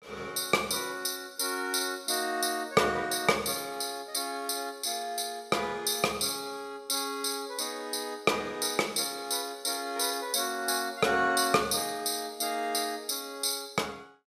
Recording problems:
none

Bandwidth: 14.5 kHz